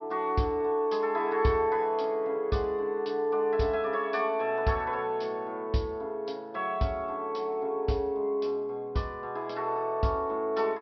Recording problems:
treble missing; nothing above 5.5 kHz

